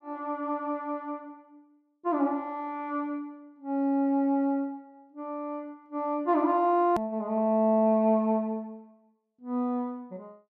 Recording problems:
click at an edit; at 7 s

